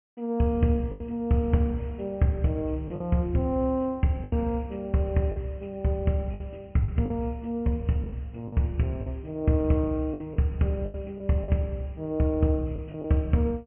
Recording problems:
low-pass filter; nothing above 3 kHz
lost packets; 6% of the sound replaced, filled with the last packet

